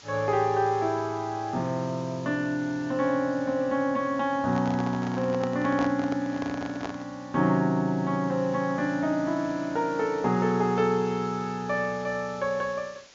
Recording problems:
treble cut off; nothing above 7.2 kHz
hiss; slope 0 dB per octave, SNR 23 dB
microphone handling noise; from 4.5 to 7 s; peak -4 dB vs average level

